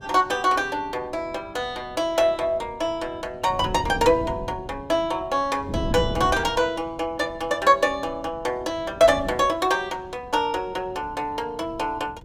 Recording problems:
wind on the microphone; below 270 Hz, SNR 14 dB

